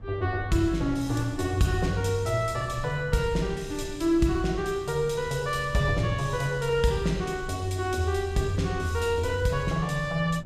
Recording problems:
rumble; below 110 Hz, SNR 16 dB

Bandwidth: 14.5 kHz